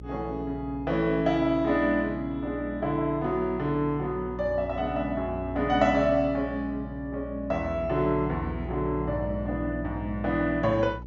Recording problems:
treble cut off; nothing above 7.4 kHz
electrical hum; 60 Hz, harmonics up to 540 Hz, SNR 12 dB

